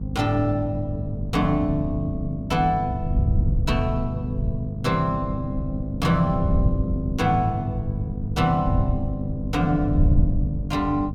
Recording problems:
hum; 50 Hz, harmonics up to 500 Hz, SNR 6 dB
wind noise; below 110 Hz, SNR 3 dB

